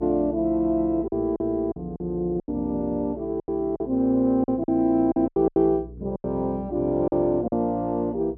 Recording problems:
hum; 60 Hz, harmonics up to 480 Hz, SNR 20 dB
packet loss; 10% of the sound replaced, filled with silence

